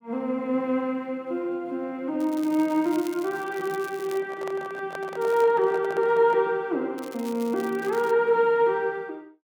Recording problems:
crackling; from 2 to 4 s, at 5 s and from 7 to 8 s; loose cable, SNR 21 dB
handling noise; from 4 to 6.5 s; peak -8 dB vs average level

